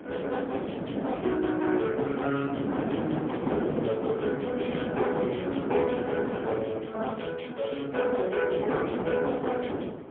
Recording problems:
phone line; 190 Hz to 3.4 kHz, AMR-NB, then MP3
wind noise; below 530 Hz, SNR 4 dB

